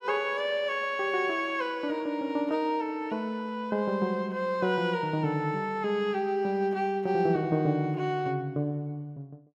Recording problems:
none

